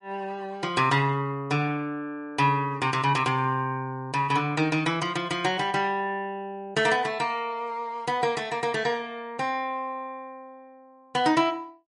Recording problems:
lossy compression; MP3, log-spectral distance 2 dB, nothing above 10.4 kHz

